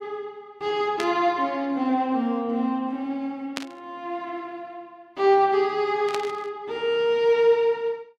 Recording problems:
burst of static; at 1 s, at 3.5 s and at 6 s; peak -2 dB vs average level

